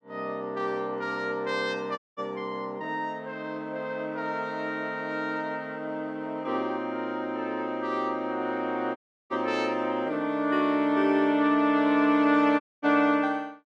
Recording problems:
dropout; at 2 s, at 9 s and at 13 s

